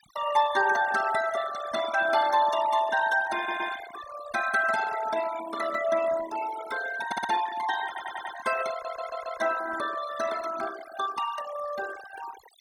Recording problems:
noise reduction artefacts; signal-to-artefact ratio 11 dB
stutter; 4 times, first at 3.5 s

